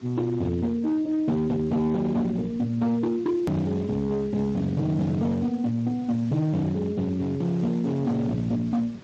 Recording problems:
lossy compression; Speex, then MP3, log-spectral distance 2 dB, nothing above 13.3 kHz
distortion; hard clipping, signal-to-distortion ratio 10 dB
background hiss; slope -5 dB per octave, SNR 22 dB
edit click; at 3.5 s

